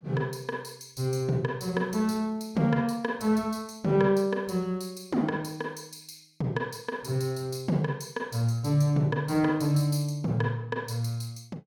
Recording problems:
none

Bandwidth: 17.5 kHz